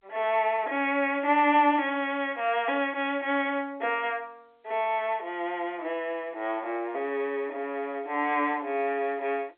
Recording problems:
telephone audio; 300 Hz to 3.5 kHz, G.711

